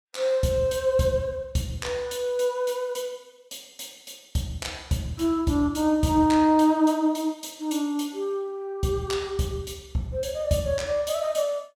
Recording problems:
none

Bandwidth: 17.5 kHz